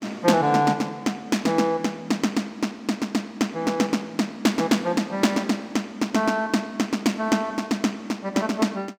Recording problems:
none

